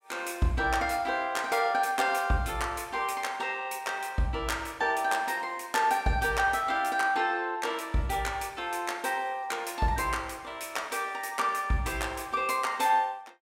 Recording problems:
none

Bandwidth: 16 kHz